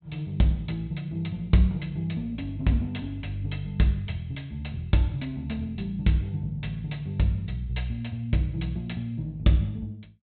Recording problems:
treble missing; nothing above 4 kHz

